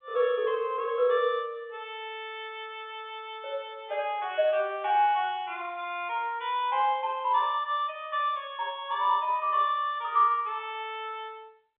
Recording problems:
telephone audio; 300 Hz to 3.6 kHz, G.711

